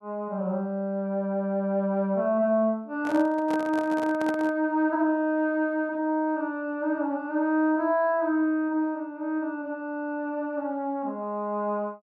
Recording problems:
microphone handling noise; from 3 to 4.5 s; peak -5 dB vs average level

